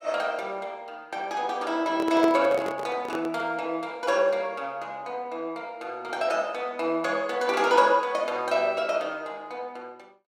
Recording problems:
handling noise; from 2 to 3.5 s; peak +2 dB vs average level

